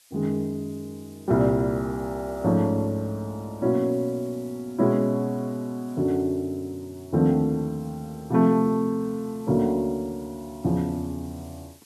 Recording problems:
background hiss; slope +3 dB per octave, SNR 27 dB

